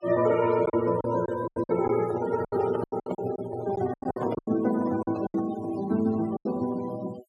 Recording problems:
noise reduction artefacts; signal-to-artefact ratio 17 dB
packet loss; 13% of the sound replaced, filled with silence
handling noise; from 2 to 5.5 s; peak -4 dB vs average level

